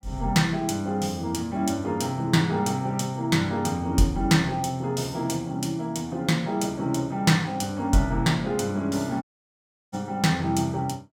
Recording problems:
dropout; at 9 s for 0.5 s

